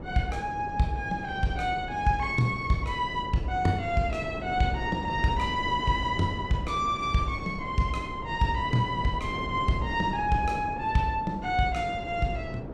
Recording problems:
wind on the microphone; below 430 Hz, SNR 10 dB

